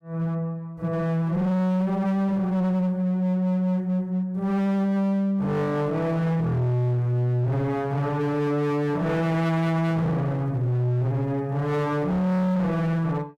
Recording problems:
distortion; hard clipping, uneven, signal-to-distortion ratio 6 dB

